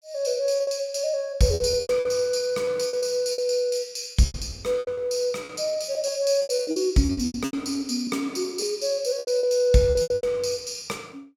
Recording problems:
packet loss; 14% of the sound replaced, filled with repeated pitch periods

